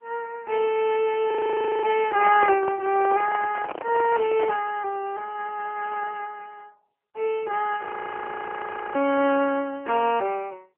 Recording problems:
phone line; 240 Hz to 3.2 kHz, AMR-NB
audio freezing; at 1.5 s for 0.5 s and at 8 s for 1 s
microphone handling noise; from 2 to 4.5 s; peak -4 dB vs average level

